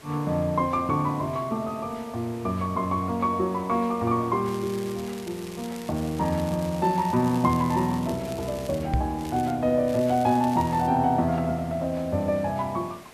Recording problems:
hiss; slope -4 dB per octave, SNR 21 dB
crackling; from 4.5 to 9 s, at 9 s and at 10 s; loose cable, SNR 19 dB
microphone thump; at 9 s; peak +4 dB vs average level

